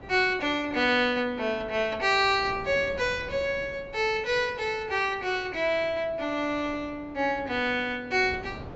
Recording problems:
treble missing; nothing above 8 kHz
wind on the microphone; below 570 Hz, SNR 19 dB

